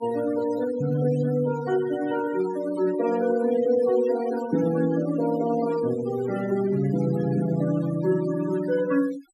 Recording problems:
denoising artefacts; signal-to-artefact ratio 15 dB

